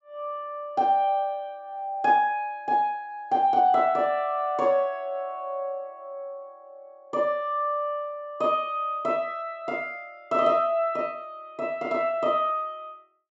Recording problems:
treble missing; nothing above 8 kHz

